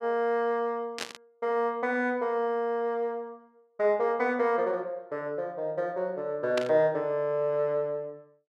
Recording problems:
static burst; at 1 s and at 6.5 s; peak -1 dB vs average level

